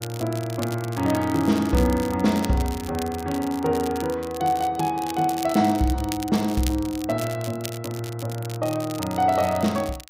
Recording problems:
crackling; vinyl, SNR 14 dB

